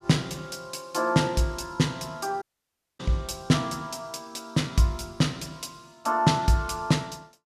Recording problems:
audio cutting out; at 2.5 s for 0.5 s

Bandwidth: 14.5 kHz